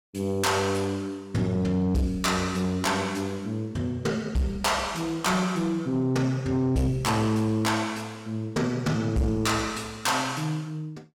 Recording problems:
distorted audio; soft clipping, signal-to-distortion ratio 10 dB

